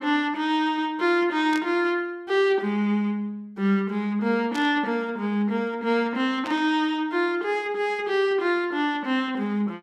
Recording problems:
static burst; at 1.5 s, at 4.5 s and at 6.5 s; peak -8 dB vs average level

